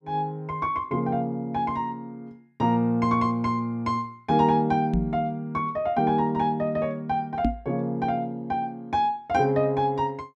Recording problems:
microphone bump; at 5 s and at 7.5 s; peak +4 dB vs average level

